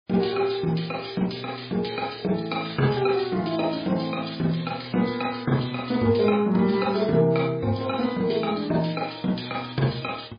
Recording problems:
lossy codec; MP3, log-spectral distance 9 dB, nothing above 4.8 kHz

